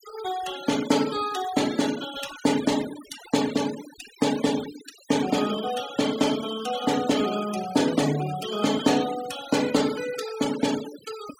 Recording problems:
noise reduction artefacts; signal-to-artefact ratio 12 dB

